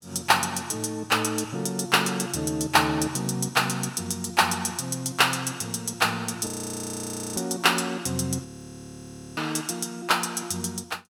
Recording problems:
audio freezing; at 6.5 s for 1 s and at 8.5 s for 1 s

